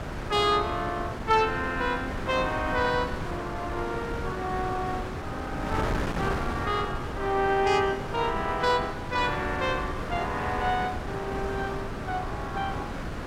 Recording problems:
wind on the microphone; below 980 Hz, SNR 5 dB

